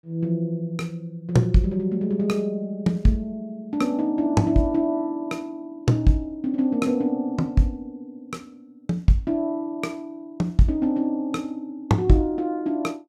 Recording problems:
none

